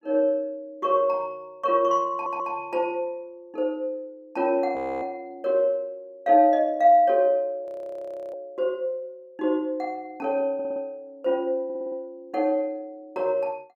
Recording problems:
stutter; at 2 s, at 11 s and at 12 s
frozen audio; at 5 s and at 7.5 s for 0.5 s

